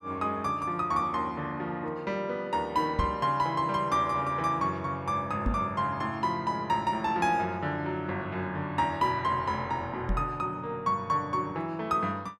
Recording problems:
microphone bump; at 3 s, at 5.5 s and at 10 s; peak +3 dB vs average level

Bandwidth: 14.5 kHz